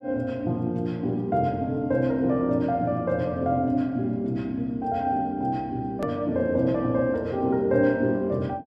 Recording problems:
click at an edit; at 6 s

